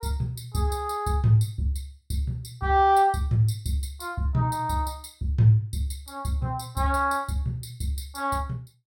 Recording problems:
none

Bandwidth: 17 kHz